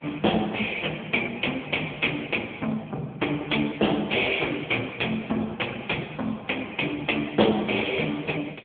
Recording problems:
phone line; 190 Hz to 3.4 kHz, AMR-NB

